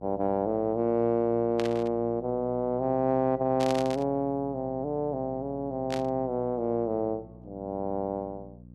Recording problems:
hum; 60 Hz, harmonics up to 540 Hz, SNR 20 dB
static burst; at 1.5 s, at 3.5 s and at 6 s; peak -4 dB vs average level

